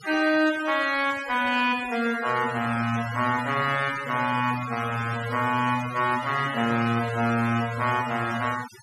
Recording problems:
noise reduction artefacts; signal-to-artefact ratio 13 dB

